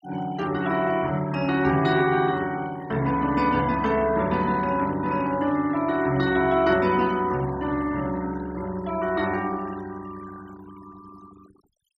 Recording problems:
noise reduction artefacts; signal-to-artefact ratio 20 dB

